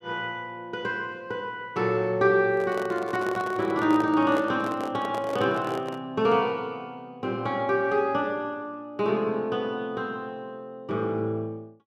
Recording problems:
microphone handling noise; from 2.5 to 6 s; peak -3 dB vs average level

